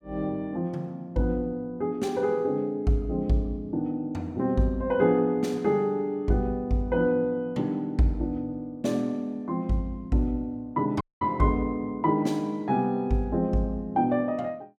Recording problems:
audio cutting out; at 11 s

